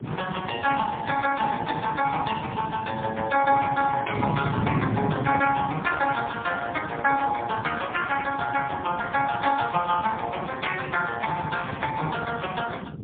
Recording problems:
telephone audio; 220 Hz to 2.8 kHz, AMR-NB, then MP3
wind on the microphone; below 260 Hz, SNR 7 dB
crackling; at 6 s; loose cable, SNR 26 dB

